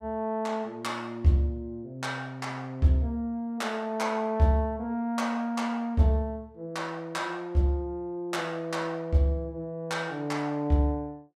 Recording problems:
none

